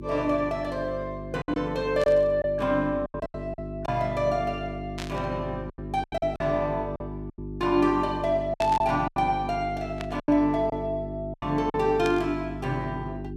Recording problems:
electrical hum; 50 Hz, harmonics up to 400 Hz, SNR 10 dB
packet loss; 8% of the sound replaced, filled with silence
static burst; 5 times, first at 2 s; peak -4 dB vs average level

